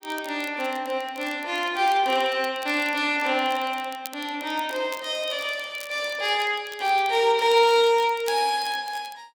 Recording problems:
crackling; vinyl, SNR 21 dB

